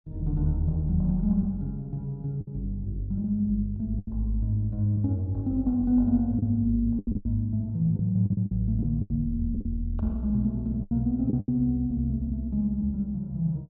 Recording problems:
lost packets; 6% of the sound replaced, filled with the last packet

